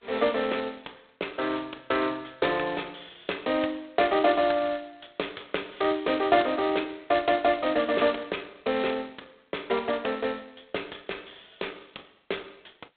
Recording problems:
phone line; 320 Hz to 4 kHz, G.726

